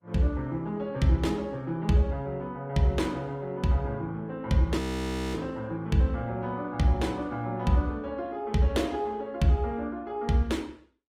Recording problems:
lossy compression; Opus, log-spectral distance 2 dB, nothing above 18.3 kHz
frozen audio; at 5 s for 0.5 s

